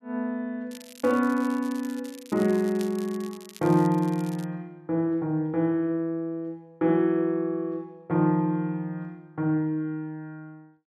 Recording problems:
crackle; from 0.5 to 4.5 s; loose cable, SNR 21 dB

